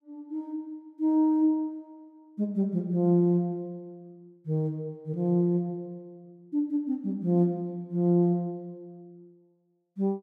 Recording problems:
none

